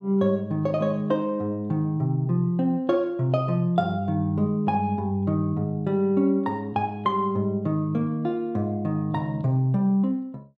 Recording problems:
none

